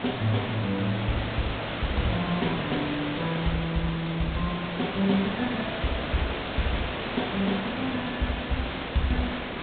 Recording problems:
treble cut off; nothing above 4 kHz
background hiss; SNR 2 dB

